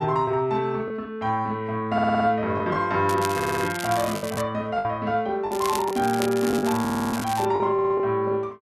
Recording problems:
packet loss; 6% of the sound replaced, filled with the last packet
stutter; 4 times, first at 2 s
crackling; from 3 to 4.5 s and from 5.5 to 7.5 s; loose cable, SNR 12 dB

